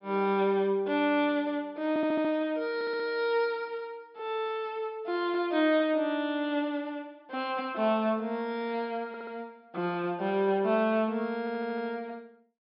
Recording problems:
treble cut off; nothing above 5.5 kHz
audio stuttering; 4 times, first at 2 s

